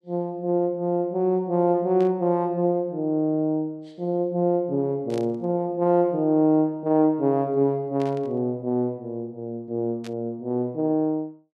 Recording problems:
burst of static; 4 times, first at 2 s; peak -14 dB vs average level

